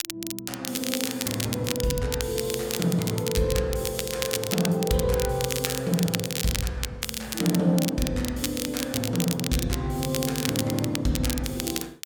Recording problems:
crackling; vinyl, SNR 4 dB

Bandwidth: 17 kHz